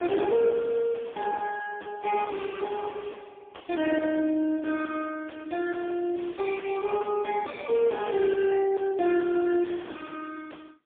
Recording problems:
telephone audio; 240 Hz to 3.3 kHz, AMR-NB, then MP3
distorted audio; soft clipping, signal-to-distortion ratio 6 dB

